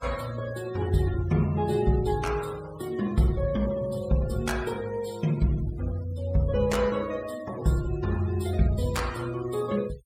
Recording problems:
noise reduction artefacts; signal-to-artefact ratio 19 dB

